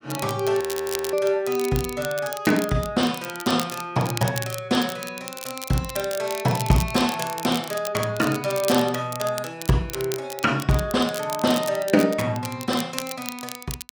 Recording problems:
crackling; vinyl, SNR 11 dB
frozen audio; at 0.5 s for 0.5 s

